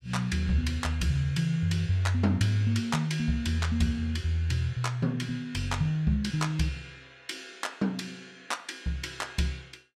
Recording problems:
none

